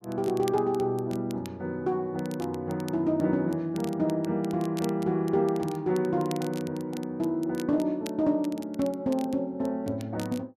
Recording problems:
crackle; vinyl, SNR 20 dB

